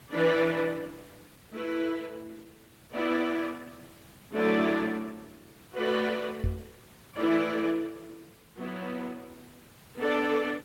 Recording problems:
codec artefacts; Opus, log-spectral distance 6 dB
background hiss; slope -3 dB per octave, SNR 25 dB
knock on the microphone; at 6.5 s; peak +3 dB vs average level

